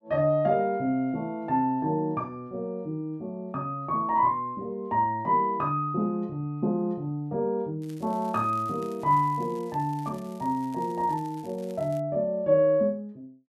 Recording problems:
crackling; from 8 to 12 s; loose cable, SNR 27 dB

